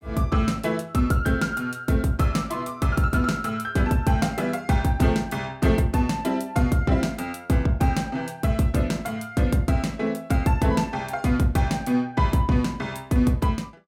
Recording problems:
none

